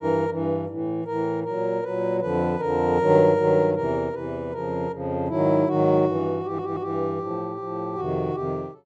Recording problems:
stutter; at 6.5 s

